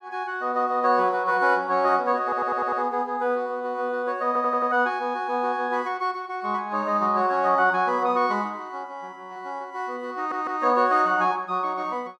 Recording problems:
stutter; at 2 s, at 4.5 s and at 10 s

